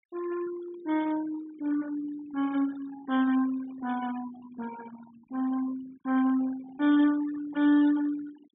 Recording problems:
treble missing; nothing above 4 kHz
denoising artefacts; signal-to-artefact ratio 17 dB

